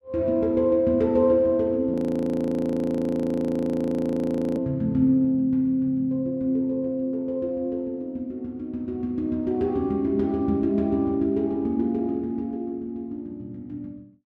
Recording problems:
frozen audio; at 2 s for 2.5 s

